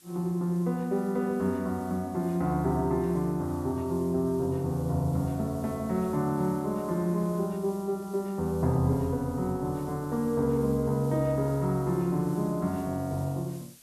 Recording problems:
hiss; SNR 23 dB

